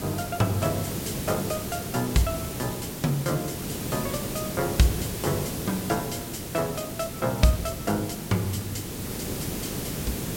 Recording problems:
background hiss; SNR 4 dB

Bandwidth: 16.5 kHz